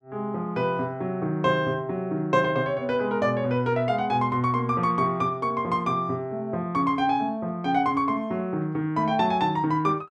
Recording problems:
none

